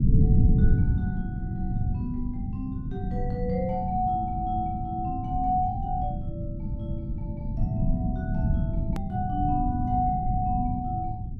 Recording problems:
rumble; below 150 Hz, SNR -2 dB
edit click; at 9 s

